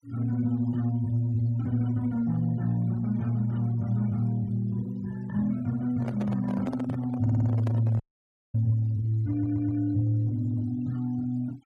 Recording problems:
denoising artefacts; signal-to-artefact ratio 25 dB
microphone handling noise; from 6 to 8.5 s; peak -6 dB vs average level
audio stuttering; at 7 s and at 9.5 s
audio cutting out; at 8 s for 0.5 s

